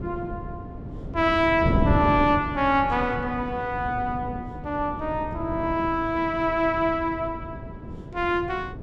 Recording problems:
wind on the microphone; below 270 Hz, SNR 8 dB

